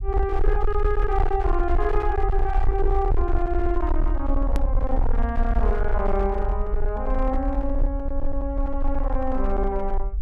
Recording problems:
distortion; hard clipping, uneven, signal-to-distortion ratio 10 dB
low-frequency rumble; below 50 Hz, SNR 0 dB
hard cut with a click; at 4.5 s

